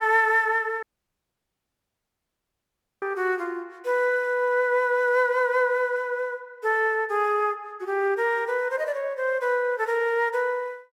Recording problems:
dropout; at 1 s for 2 s

